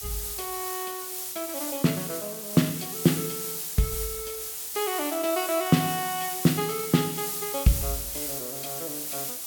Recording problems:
background hiss; SNR 3 dB

